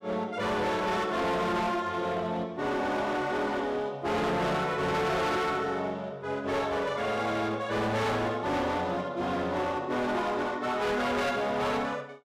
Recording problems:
distorted audio; hard clipping, signal-to-distortion ratio 8 dB

